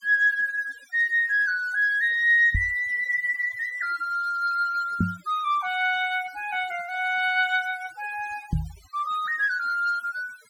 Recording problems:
noise reduction artefacts; signal-to-artefact ratio 24 dB
knock on the microphone; at 2.5 s, at 5 s and at 8.5 s; peak +3 dB vs average level

